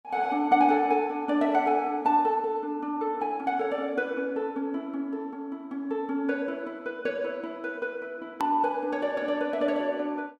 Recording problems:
hard cut with a click; at 8.5 s

